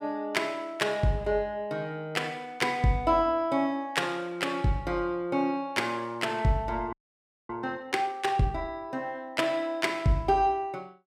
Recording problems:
audio freezing; at 7 s for 0.5 s

